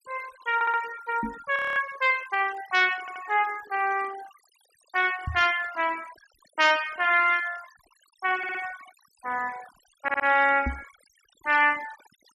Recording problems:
denoising artefacts; signal-to-artefact ratio 19 dB
stutter; 4 times, first at 0.5 s
microphone bump; at 1 s, at 5.5 s and at 11 s; peak -1 dB vs average level
audio freezing; at 1.5 s

